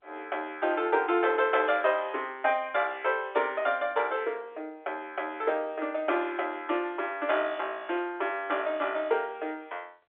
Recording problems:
telephone audio; 280 Hz to 3.6 kHz, G.711

